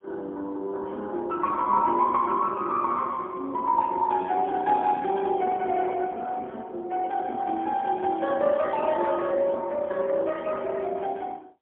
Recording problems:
telephone audio; 240 Hz to 2.2 kHz, AMR-NB, then MP3

